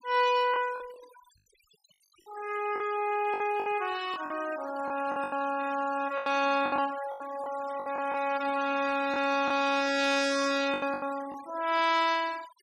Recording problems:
denoising artefacts; signal-to-artefact ratio 16 dB
packet loss; 9% of the sound replaced, filled with the last packet

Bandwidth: 15.5 kHz